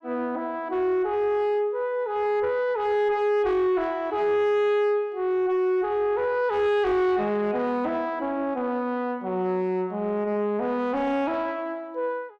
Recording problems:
distorted audio; soft clipping, signal-to-distortion ratio 10 dB

